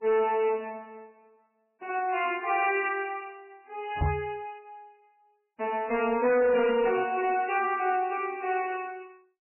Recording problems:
lossy compression; MP3, log-spectral distance 3 dB, nothing above 2.4 kHz
distortion; hard clipping, signal-to-distortion ratio 11 dB
microphone thump; at 4 s; peak +3 dB vs average level

